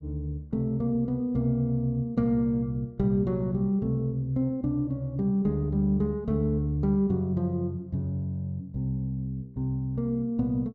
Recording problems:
none

